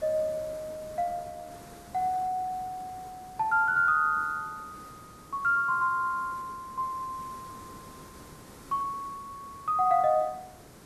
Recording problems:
hiss; SNR 20 dB

